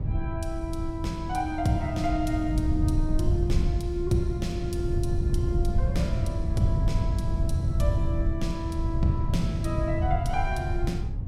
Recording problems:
wind on the microphone; below 110 Hz, SNR -2 dB

